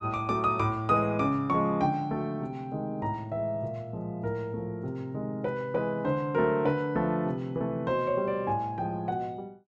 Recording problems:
none

